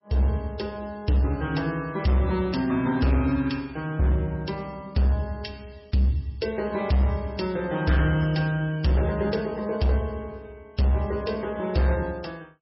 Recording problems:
lossy codec; MP3, log-spectral distance 3 dB, nothing above 5.5 kHz
distortion; hard clipping, signal-to-distortion ratio 11 dB

